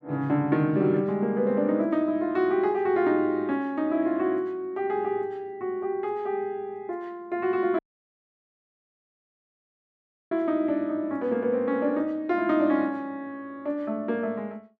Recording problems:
audio cutting out; at 8 s for 2.5 s

